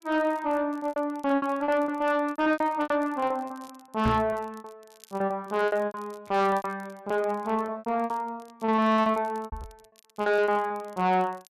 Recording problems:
distortion; soft clipping, signal-to-distortion ratio 11 dB
crackle; vinyl, SNR 30 dB
lost packets; 18% of the sound replaced, filled with repeated pitch periods
microphone bump; at 4 s and at 9.5 s; peak +3 dB vs average level

